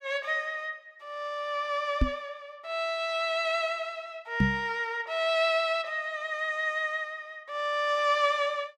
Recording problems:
microphone bump; at 2 s and at 4.5 s; peak +8 dB vs average level

